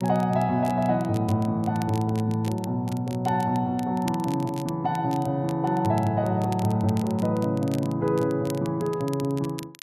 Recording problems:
crackling; vinyl, SNR 20 dB

